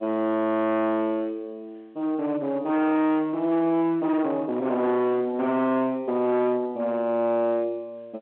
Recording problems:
phone line; 990 Hz to 3 kHz, G.711
distorted audio; hard clipping, uneven, signal-to-distortion ratio 9 dB

